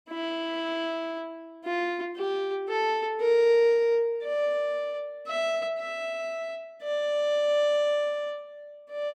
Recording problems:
none

